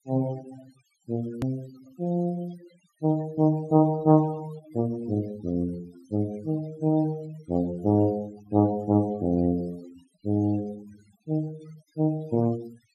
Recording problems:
noise reduction artefacts; signal-to-artefact ratio 23 dB
click at an edit; at 1.5 s

